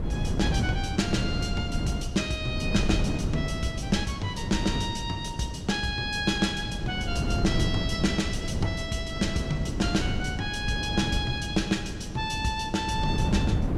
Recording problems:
wind on the microphone; below 210 Hz, SNR 2 dB

